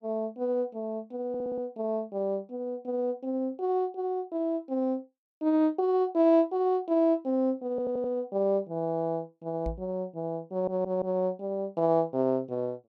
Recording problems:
audio stuttering; at 1.5 s, at 7.5 s and at 11 s
microphone thump; at 9.5 s; peak -3 dB vs average level

